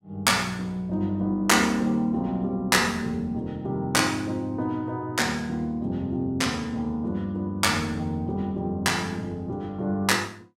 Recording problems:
none

